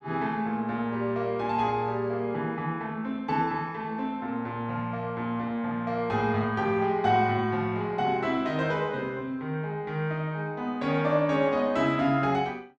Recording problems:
none

